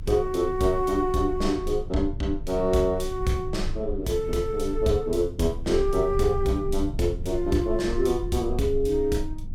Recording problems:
low-frequency rumble; below 62 Hz, strongest tone 20 Hz, SNR 10 dB

